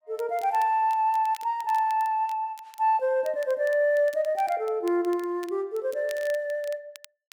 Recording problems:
crackle; vinyl, SNR 24 dB

